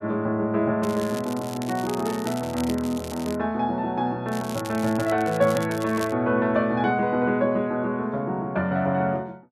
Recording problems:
crackle; from 1 to 3.5 s and from 4.5 to 6 s; loose cable, SNR 16 dB

